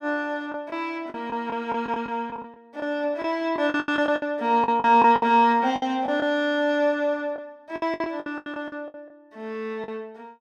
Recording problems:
lost packets; 13% of the sound replaced, filled with the last packet

